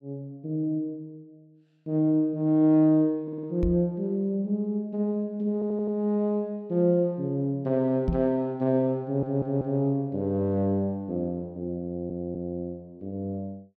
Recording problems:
audio stuttering; 4 times, first at 3 s
microphone thump; at 3.5 s and at 8 s; peak +3 dB vs average level

